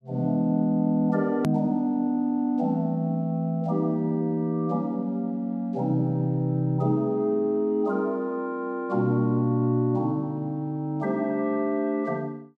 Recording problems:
edit click; at 1.5 s

